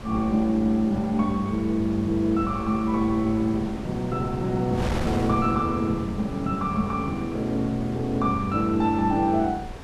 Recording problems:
wind noise; below 680 Hz, SNR 12 dB

